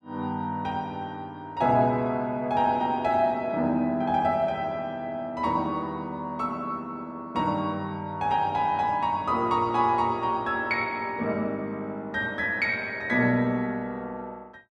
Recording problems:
none

